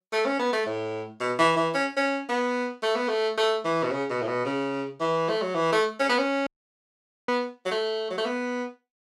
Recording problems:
audio cutting out; at 6.5 s for 1 s

